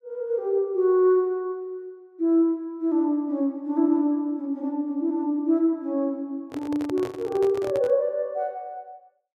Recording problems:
handling noise; from 6.5 to 8 s; peak -7 dB vs average level

